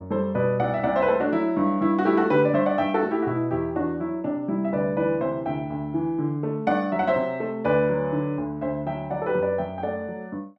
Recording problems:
none

